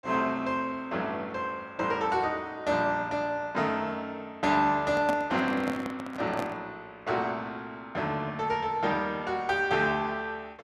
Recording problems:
microphone handling noise; from 5 to 6.5 s; peak +1 dB vs average level

